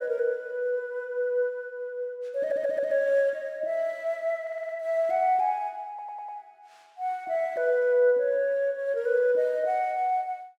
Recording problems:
audio stuttering; at 2.5 s, at 4.5 s and at 6 s

